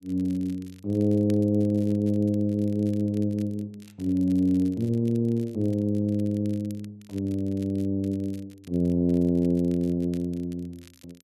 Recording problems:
crackling; vinyl, SNR 29 dB

